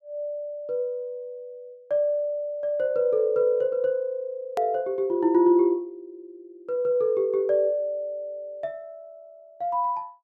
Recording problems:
edit click; at 4.5 s

